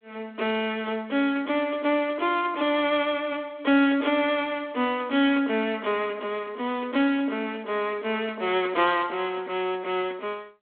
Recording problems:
telephone audio; 240 Hz to 3.5 kHz, G.726

